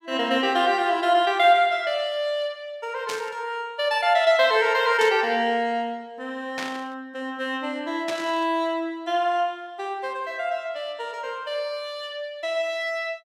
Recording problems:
static burst; 4 times, first at 3 s; peak -3 dB vs average level

